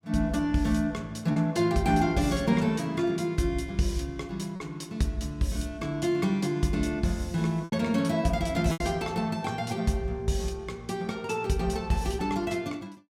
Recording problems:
packet loss; 1.9% of the sound replaced, filled with repeated pitch periods

